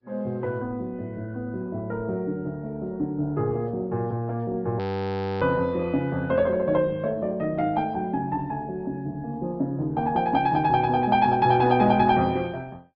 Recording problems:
treble missing; nothing above 5.5 kHz
lossy compression; Opus, then Opus, log-spectral distance 2 dB
frozen audio; at 5 s for 0.5 s

